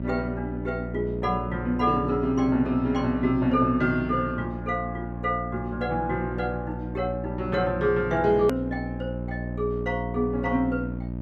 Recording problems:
hum; 60 Hz, harmonics up to 660 Hz, SNR 7 dB
hard cut with a click; at 8.5 s

